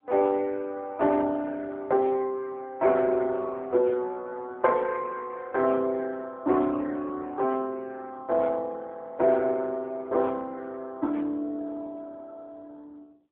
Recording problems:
phone line; 260 Hz to 3.5 kHz, AMR-NB

